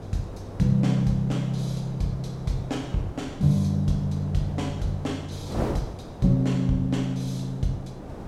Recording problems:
wind on the microphone; below 570 Hz, SNR 12 dB

